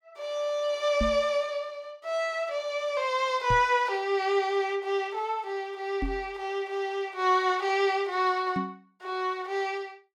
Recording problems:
microphone bump; 4 times, first at 1 s; peak +1 dB vs average level

